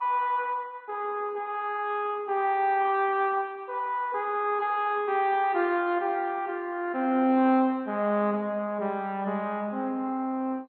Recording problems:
codec artefacts; MP2, log-spectral distance 2 dB, nothing above 3.6 kHz

